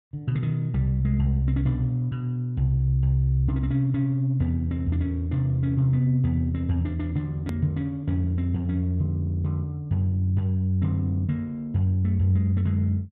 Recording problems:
hard cut with a click; at 7.5 s

